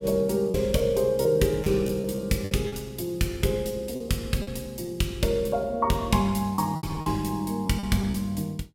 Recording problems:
lost packets; 8% of the sound replaced, filled with repeated pitch periods

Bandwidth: 16 kHz